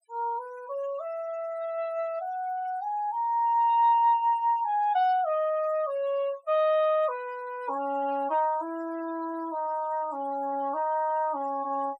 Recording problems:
denoising artefacts; signal-to-artefact ratio 23 dB

